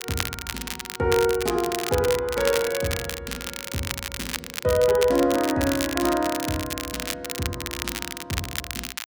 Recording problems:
crackling; vinyl, SNR 6 dB

